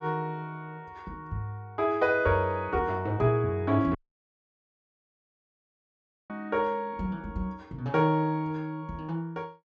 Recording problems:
treble cut off; nothing above 8 kHz
dropout; at 4 s for 2.5 s

